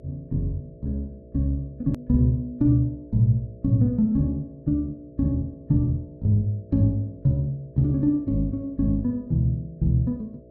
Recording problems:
electrical hum; 60 Hz, harmonics up to 660 Hz, SNR 24 dB
hard cut with a click; at 2 s

